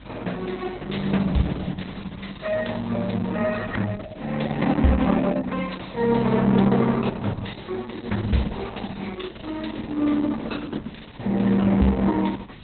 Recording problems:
lossy compression; Opus, log-spectral distance 10 dB, nothing above 4.1 kHz
hum; 50 Hz, harmonics up to 400 Hz, SNR 25 dB
background hiss; SNR 27 dB

